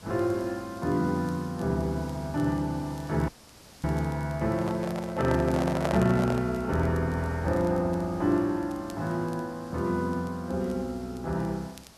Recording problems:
background hiss; SNR 22 dB
crackling; vinyl, SNR 29 dB
dropout; at 3.5 s for 0.5 s
handling noise; from 4.5 to 6.5 s; peak +3 dB vs average level

